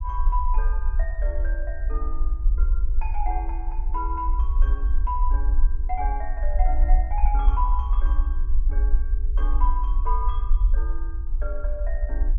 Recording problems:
low-frequency rumble; below 48 Hz, SNR -8 dB

